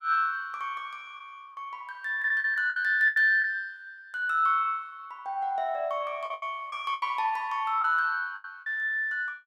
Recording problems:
lost packets; 7% of the sound replaced, filled with the last packet

